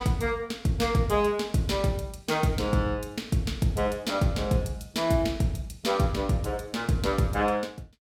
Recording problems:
none

